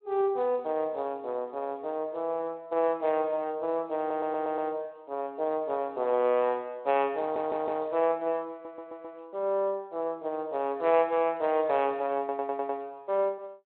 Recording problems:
phone line; 280 Hz to 3.3 kHz, Speex
stutter; 4 times, first at 4 s

